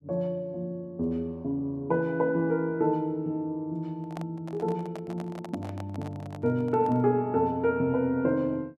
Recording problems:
handling noise; from 4 to 7 s; peak -8 dB vs average level

